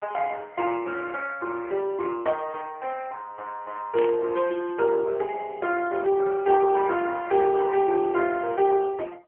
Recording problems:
phone line; 300 Hz to 3.3 kHz, AMR-NB
static burst; at 4 s; peak -7 dB vs average level

